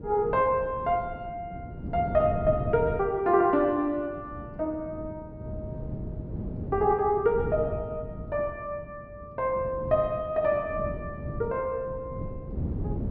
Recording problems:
treble missing; nothing above 5.5 kHz
wind noise; below 230 Hz, SNR 10 dB

